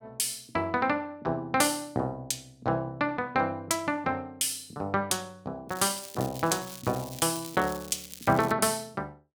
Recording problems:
crackle; from 5.5 to 8.5 s; loose cable, SNR 14 dB

